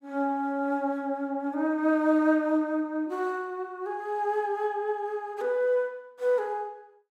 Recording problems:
none

